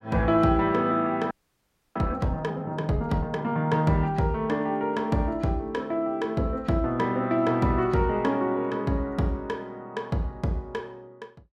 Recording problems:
audio freezing; at 1.5 s for 0.5 s

